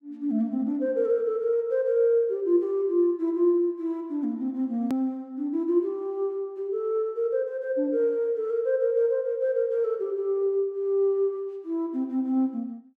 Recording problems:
hard cut with a click; at 5 s

